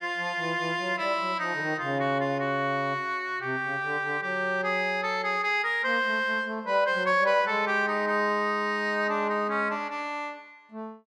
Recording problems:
none

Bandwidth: 12.5 kHz